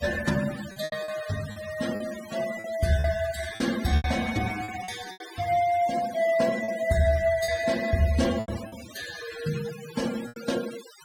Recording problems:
denoising artefacts; signal-to-artefact ratio 13 dB
lost packets; 8% of the sound replaced, filled with repeated pitch periods

